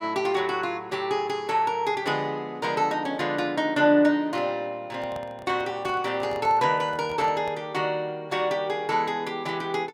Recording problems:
handling noise; from 5 to 7.5 s; peak -10 dB vs average level

